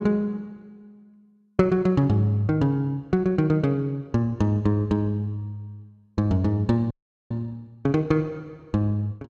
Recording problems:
audio freezing; at 7 s

